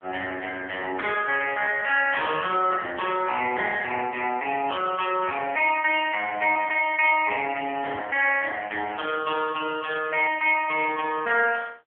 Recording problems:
phone line; 320 Hz to 2.6 kHz, AMR-NB

